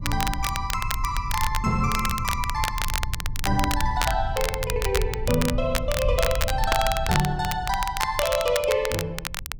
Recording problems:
rumble; below 80 Hz, SNR 6 dB
crackling; vinyl, SNR 4 dB

